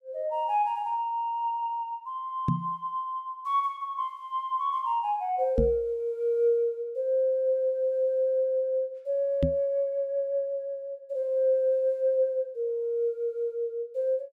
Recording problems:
microphone thump; at 2.5 s, at 5.5 s and at 9.5 s; peak +5 dB vs average level

